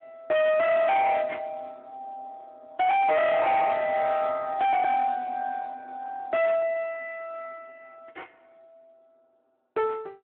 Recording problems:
phone line; 320 Hz to 3.8 kHz, Speex
distorted audio; hard clipping, signal-to-distortion ratio 6 dB

